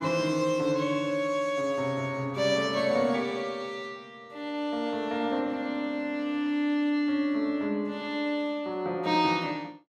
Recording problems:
none

